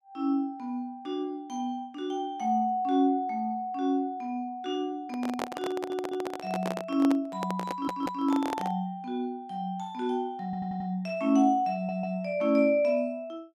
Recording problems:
handling noise; from 5 to 9 s; peak -1 dB vs average level
audio stuttering; 4 times, first at 5.5 s

